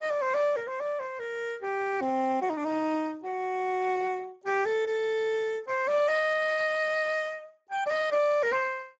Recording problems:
lossy compression; Speex, log-spectral distance 3 dB, nothing above 7.3 kHz

